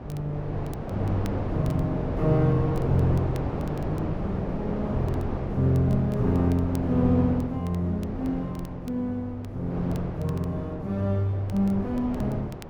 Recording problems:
wind on the microphone; below 500 Hz, SNR 6 dB
crackle; vinyl, SNR 27 dB

